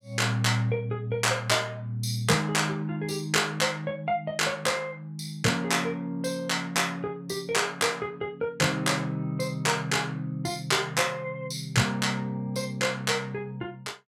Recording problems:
none

